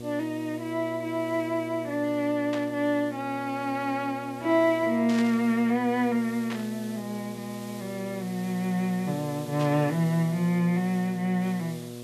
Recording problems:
mains hum; 60 Hz, harmonics up to 720 Hz, SNR 13 dB
background hiss; slope 0 dB per octave, SNR 21 dB
static burst; 4 times, first at 2.5 s; peak -6 dB vs average level

